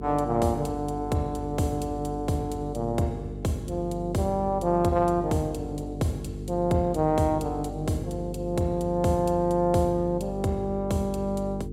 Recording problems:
hum; 50 Hz, harmonics up to 450 Hz, SNR 9 dB

